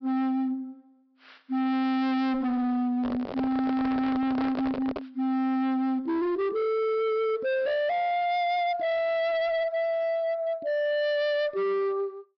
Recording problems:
low-pass filter; nothing above 5.5 kHz
distortion; hard clipping, signal-to-distortion ratio 6 dB
microphone handling noise; from 3 to 5 s; peak -2 dB vs average level

